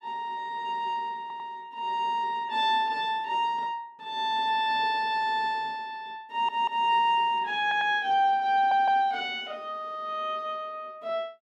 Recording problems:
audio stuttering; 4 times, first at 1 s

